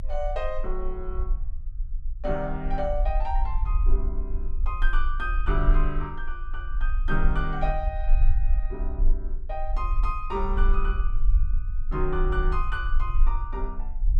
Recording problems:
rumble; below 40 Hz, strongest tone 20 Hz, SNR -3 dB

